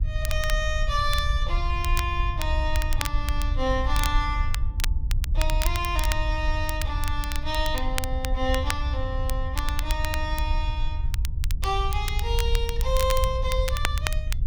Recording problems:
rumble; below 68 Hz, SNR -1 dB
crackling; vinyl, SNR 6 dB

